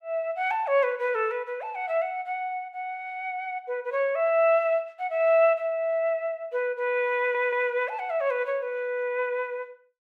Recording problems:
audio stuttering; at 7 s

